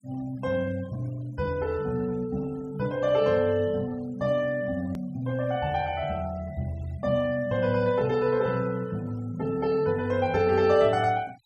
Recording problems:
noise reduction artefacts; signal-to-artefact ratio 25 dB
hard cut with a click; at 5 s

